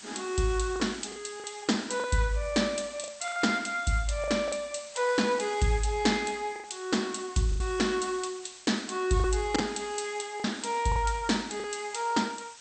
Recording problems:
lossy compression; MP2, log-spectral distance 13 dB, nothing above 8.5 kHz
background hiss; slope +2 dB per octave, SNR 17 dB
packet loss; 6% of the sound replaced, filled with the last packet

